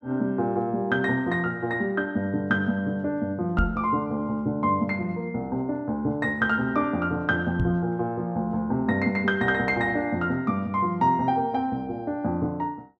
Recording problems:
knock on the microphone; at 3.5 s and at 7.5 s; peak +4 dB vs average level

